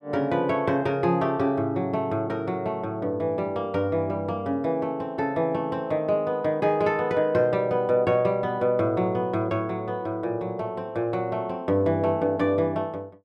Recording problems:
none

